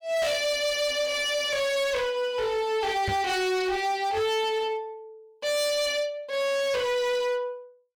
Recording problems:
distortion; hard clipping, signal-to-distortion ratio 8 dB
microphone bump; at 3 s; peak -1 dB vs average level

